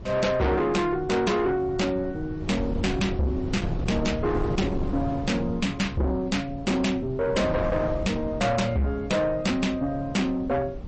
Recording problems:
codec artefacts; MP3, log-spectral distance 2 dB, nothing above 8.2 kHz
distortion; soft clipping, signal-to-distortion ratio 8 dB
wind noise; below 250 Hz, SNR 8 dB

